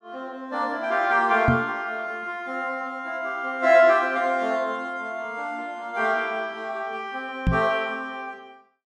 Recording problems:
microphone bump; at 1.5 s and at 7.5 s; peak +6 dB vs average level

